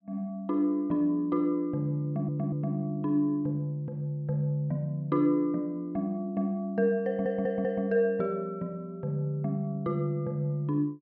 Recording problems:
audio stuttering; at 2 s and at 7 s

